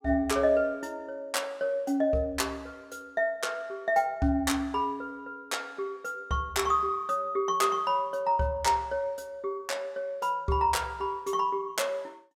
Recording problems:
none

